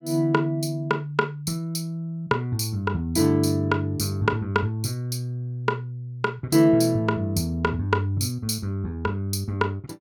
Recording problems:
none

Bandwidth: 18 kHz